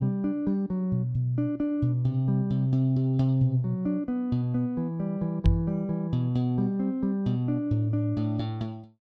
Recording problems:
microphone thump; at 5.5 s; peak +8 dB vs average level

